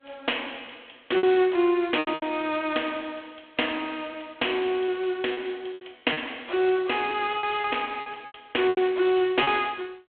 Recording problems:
telephone audio; 280 Hz to 3.4 kHz, G.726
packet loss; 8% of the sound replaced, filled with repeated pitch periods

